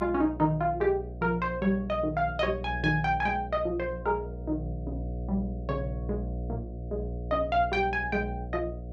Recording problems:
hum; 60 Hz, harmonics up to 720 Hz, SNR 8 dB

